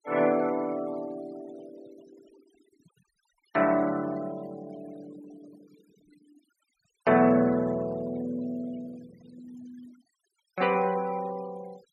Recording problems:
noise reduction artefacts; signal-to-artefact ratio 24 dB

